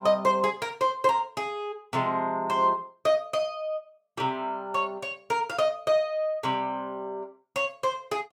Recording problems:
none

